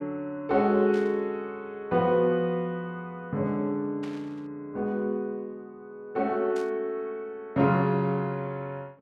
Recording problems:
burst of static; at 1 s, at 4 s and at 6.5 s; peak -13 dB vs average level

